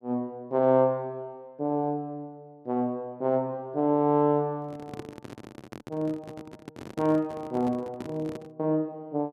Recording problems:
microphone handling noise; from 4.5 to 8.5 s; peak -5 dB vs average level

